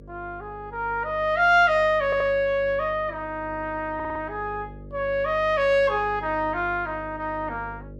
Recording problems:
electrical hum; 50 Hz, harmonics up to 600 Hz, SNR 19 dB
audio stuttering; at 2 s and at 4 s

